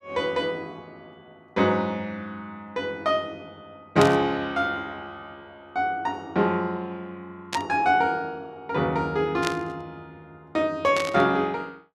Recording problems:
static burst; 4 times, first at 4 s; peak +1 dB vs average level

